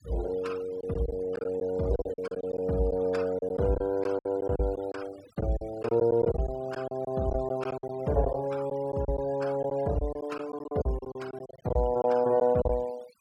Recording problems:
denoising artefacts; signal-to-artefact ratio 20 dB
lost packets; 11% of the sound replaced, filled with silence

